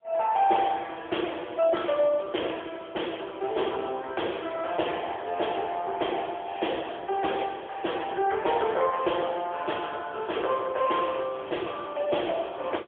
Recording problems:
phone line; 320 Hz to 3.4 kHz, AMR-NB, then MP3

